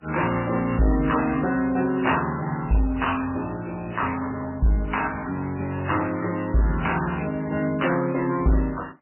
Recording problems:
codec artefacts; MP3, then MP3, log-spectral distance 6 dB, nothing above 2.8 kHz
distorted audio; soft clipping, signal-to-distortion ratio 10 dB

